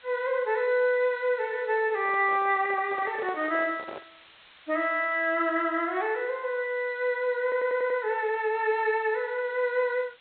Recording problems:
treble missing; nothing above 4 kHz
hiss; SNR 27 dB
handling noise; from 2 to 4 s; peak -9 dB vs average level
stutter; at 7.5 s

